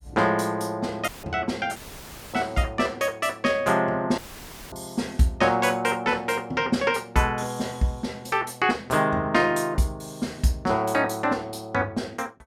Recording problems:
audio cutting out; at 1 s, at 2 s for 0.5 s and at 4 s for 0.5 s; filled with static

